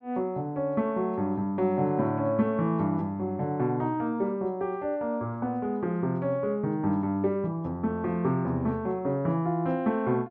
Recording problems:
none

